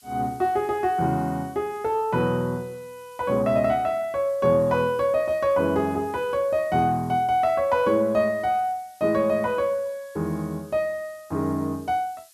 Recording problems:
background hiss; SNR 28 dB

